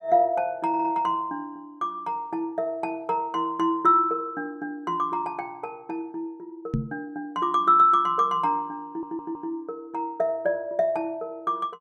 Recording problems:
audio stuttering; at 0.5 s and at 9 s
knock on the microphone; at 6.5 s; peak +3 dB vs average level

